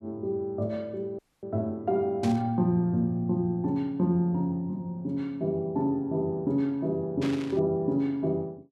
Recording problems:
dropout; at 1 s
burst of static; at 2 s and at 7 s; peak -6 dB vs average level

